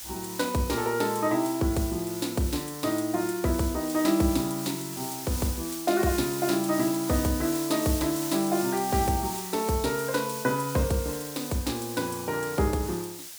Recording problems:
hiss; slope +3 dB per octave, SNR 8 dB

